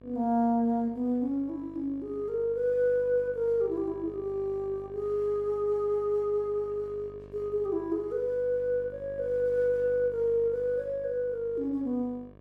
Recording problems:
mains hum; 50 Hz, harmonics up to 1.3 kHz, SNR 21 dB

